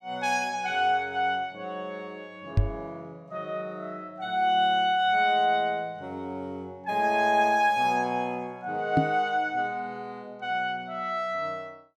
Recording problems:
microphone thump; at 2.5 s and at 9 s; peak +7 dB vs average level

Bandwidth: 15 kHz